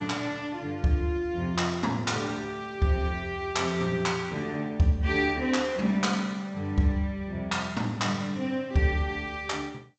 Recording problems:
codec artefacts; G.722, log-spectral distance 2 dB, nothing above 7.6 kHz

